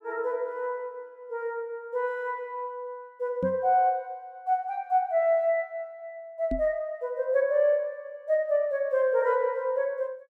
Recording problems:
microphone thump; at 3.5 s and at 6.5 s; peak -1 dB vs average level

